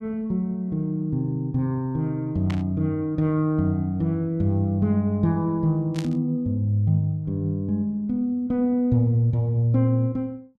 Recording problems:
static burst; at 2.5 s and at 6 s; peak -8 dB vs average level

